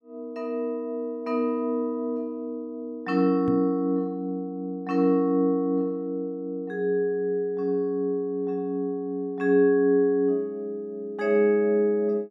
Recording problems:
knock on the microphone; at 3.5 s; peak -3 dB vs average level

